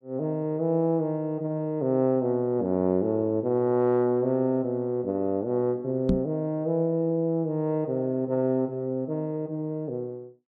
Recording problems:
knock on the microphone; at 6 s; peak +5 dB vs average level

